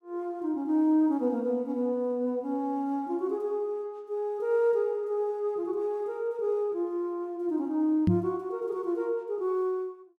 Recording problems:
microphone thump; at 8 s; peak +8 dB vs average level

